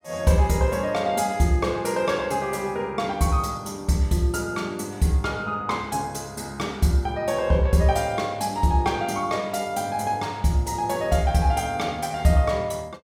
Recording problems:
none

